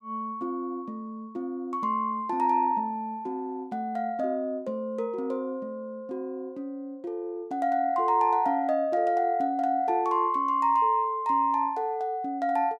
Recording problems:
none

